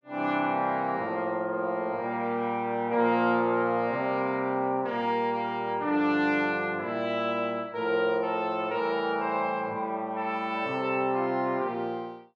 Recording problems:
none

